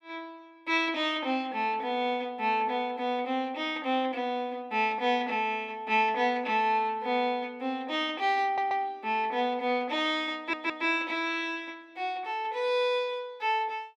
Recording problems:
audio stuttering; at 8.5 s and at 10 s

